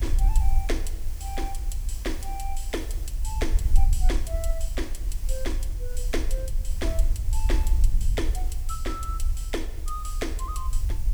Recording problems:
hiss; SNR 11 dB
rumble; below 50 Hz, strongest tone 18 Hz, SNR -6 dB

